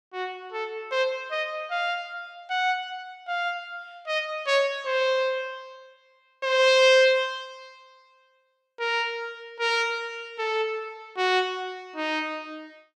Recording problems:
none

